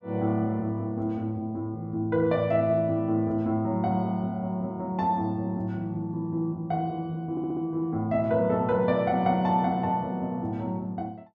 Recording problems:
stutter; at 7.5 s

